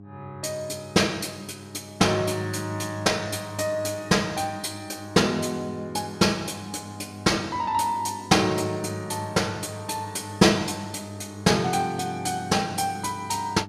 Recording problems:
hum; 50 Hz, harmonics up to 800 Hz, SNR 17 dB

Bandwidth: 14.5 kHz